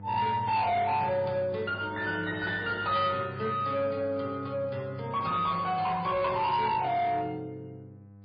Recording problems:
lossy compression; MP3, log-spectral distance 2 dB, nothing above 4.6 kHz
distortion; soft clipping, signal-to-distortion ratio 10 dB
hum; 50 Hz, harmonics up to 1 kHz, SNR 17 dB

